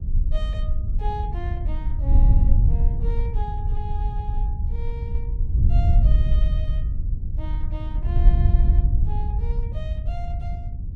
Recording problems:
wind on the microphone; below 68 Hz, SNR -15 dB

